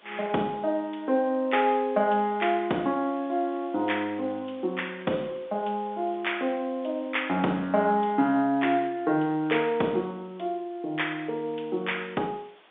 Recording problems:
phone line; 220 Hz to 3.6 kHz, G.711
background hiss; SNR 27 dB

